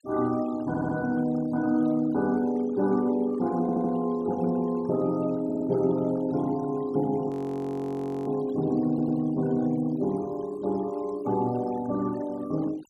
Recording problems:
denoising artefacts; signal-to-artefact ratio 22 dB
stutter; 4 times, first at 0.5 s
audio freezing; at 7.5 s for 1 s

